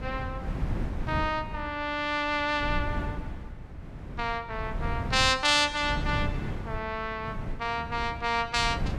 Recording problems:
wind on the microphone; below 180 Hz, SNR 8 dB

